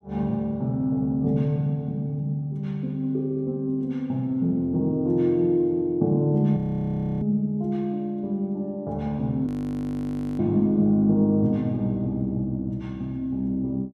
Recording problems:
audio freezing; at 6.5 s for 0.5 s and at 9.5 s for 1 s

